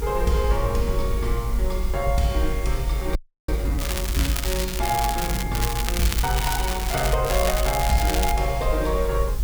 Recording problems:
background hiss; slope -2 dB per octave, SNR 14 dB
low-frequency rumble; below 52 Hz, strongest tone 50 Hz, SNR 2 dB
wind noise; below 270 Hz, SNR 13 dB
audio freezing; at 3 s
crackle; from 4 to 5.5 s, from 5.5 to 7 s and from 7 to 8.5 s; loose cable, SNR 3 dB

